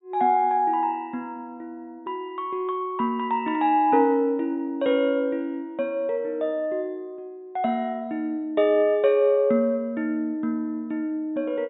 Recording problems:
low-pass filter; nothing above 4 kHz

